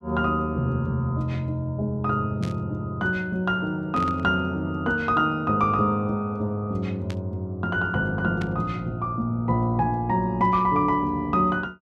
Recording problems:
burst of static; 4 times, first at 2.5 s; peak -9 dB vs average level

